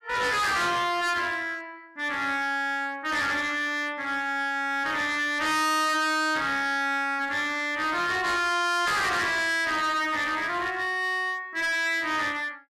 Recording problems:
distortion; hard clipping, uneven, signal-to-distortion ratio 5 dB

